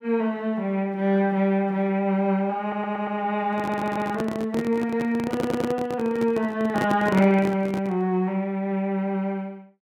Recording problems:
stutter; at 2.5 s, at 3.5 s and at 5.5 s
microphone handling noise; from 3.5 to 8 s; peak +1 dB vs average level

